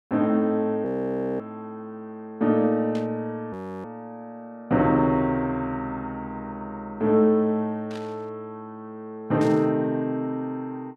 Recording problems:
frozen audio; at 1 s for 0.5 s and at 3.5 s
static burst; at 3 s, at 8 s and at 9.5 s; peak -13 dB vs average level

